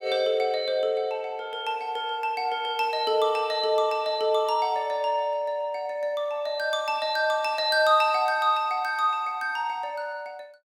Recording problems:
none

